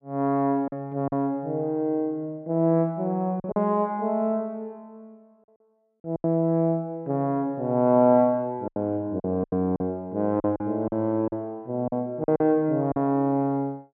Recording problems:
lost packets; 6% of the sound replaced, filled with silence

